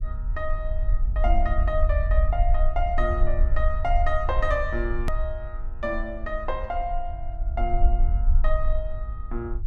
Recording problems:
low-frequency rumble; below 50 Hz, strongest tone 22 Hz, SNR -2 dB
hard cut with a click; at 5 s

